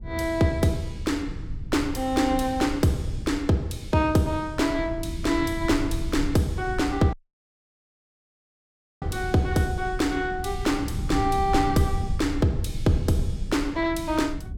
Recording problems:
low-frequency rumble; below 110 Hz, SNR 9 dB
dropout; at 7 s for 2 s

